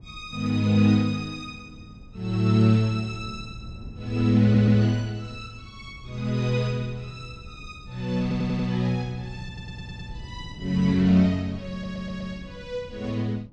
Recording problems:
wind on the microphone; below 160 Hz, SNR 20 dB
audio stuttering; 4 times, first at 4.5 s

